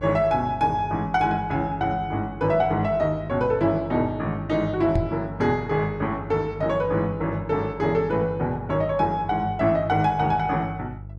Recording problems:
electrical hum; 50 Hz, harmonics up to 500 Hz, SNR 15 dB
microphone thump; at 5 s; peak +2 dB vs average level

